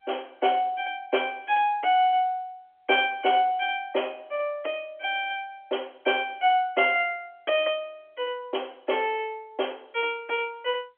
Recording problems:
telephone audio; 280 Hz to 3.3 kHz, G.711

